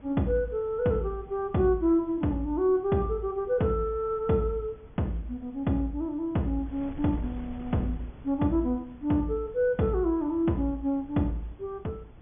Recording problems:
low-pass filter; nothing above 3.5 kHz
wind on the microphone; below 210 Hz, SNR 21 dB

